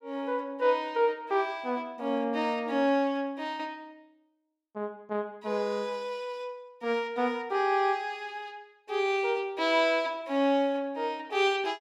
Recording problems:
none

